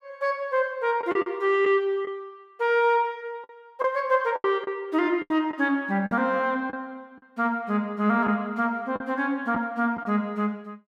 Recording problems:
packet loss; 6% of the sound replaced, filled with the last packet

